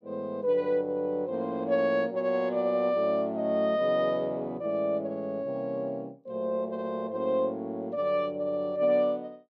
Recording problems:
none

